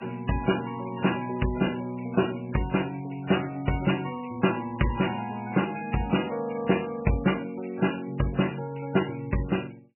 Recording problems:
lossy codec; MP3, log-spectral distance 9 dB, nothing above 2.9 kHz

